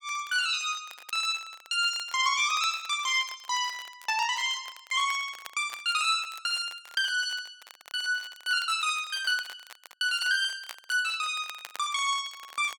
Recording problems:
crackling; vinyl, SNR 21 dB

